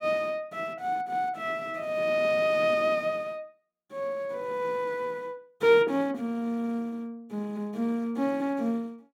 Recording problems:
none

